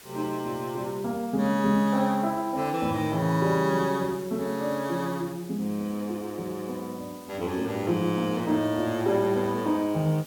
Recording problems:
hiss; slope -1 dB per octave, SNR 20 dB

